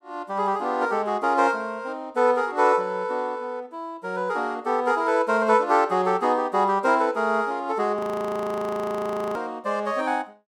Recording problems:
frozen audio; at 8 s for 1.5 s

